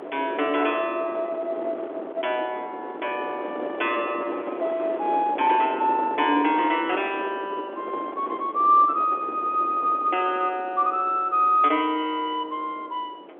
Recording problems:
telephone audio; 260 Hz to 3.5 kHz, G.711
wind on the microphone; below 690 Hz, SNR 11 dB

